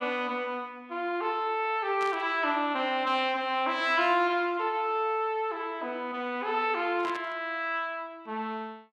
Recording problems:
static burst; at 2 s and at 7 s; peak -8 dB vs average level

